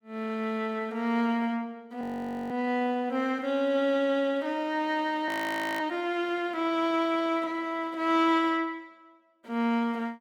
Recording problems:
audio freezing; at 2 s and at 5.5 s for 0.5 s

